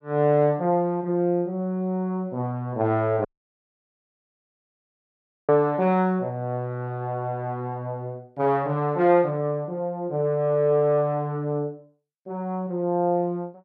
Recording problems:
audio cutting out; at 3.5 s for 2 s

